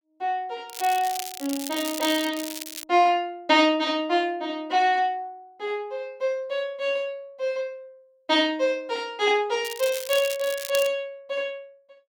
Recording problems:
crackling; from 0.5 to 3 s and from 9.5 to 11 s; loose cable, SNR 9 dB

